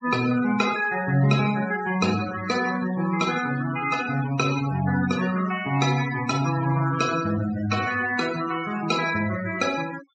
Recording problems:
treble cut off; nothing above 8 kHz
denoising artefacts; signal-to-artefact ratio 12 dB

